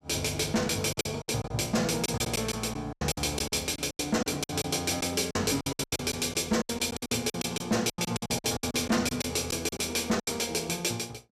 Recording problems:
distorted audio; hard clipping, signal-to-distortion ratio 10 dB
lost packets; 15% of the sound replaced, filled with silence

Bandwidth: 14.5 kHz